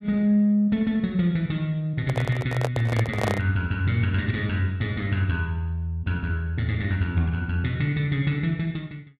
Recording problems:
microphone handling noise; from 2 to 3.5 s; peak +2 dB vs average level

